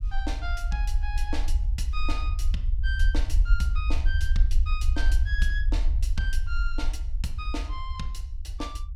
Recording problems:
rumble; below 56 Hz, SNR -7 dB

